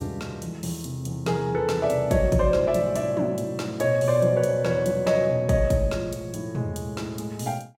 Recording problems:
none

